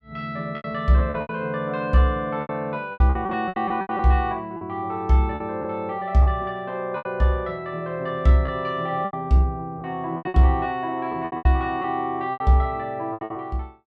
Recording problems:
lost packets; 12% of the sound replaced, filled with repeated pitch periods

